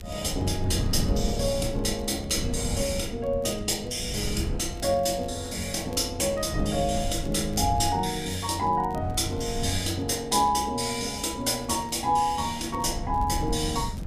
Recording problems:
wind noise; below 160 Hz, SNR 8 dB
crackle; vinyl, SNR 29 dB

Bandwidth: 15 kHz